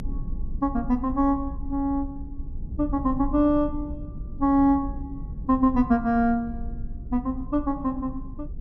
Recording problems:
low-frequency rumble; below 68 Hz, strongest tone 22 Hz, SNR 12 dB

